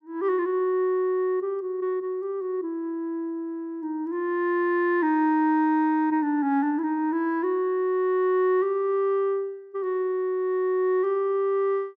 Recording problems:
none

